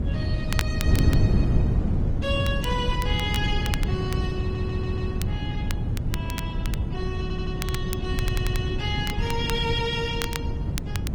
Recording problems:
lossy codec; Opus, then Opus, log-spectral distance 2 dB, nothing above 18.9 kHz
wind noise; below 160 Hz, SNR -4 dB
crackle; vinyl, SNR 7 dB
audio stuttering; at 4.5 s, at 7 s and at 8 s

